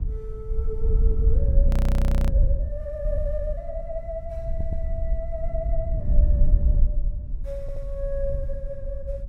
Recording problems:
wind noise; below 62 Hz, SNR -9 dB
audio freezing; at 1.5 s for 0.5 s
stutter; at 4.5 s and at 7.5 s

